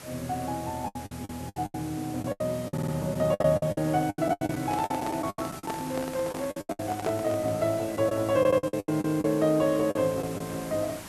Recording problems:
background hiss; slope -3 dB per octave, SNR 15 dB
lost packets; 15% of the sound replaced, filled with the last packet
audio stuttering; at 2.5 s and at 8.5 s
handling noise; from 4 to 7.5 s; peak -2 dB vs average level

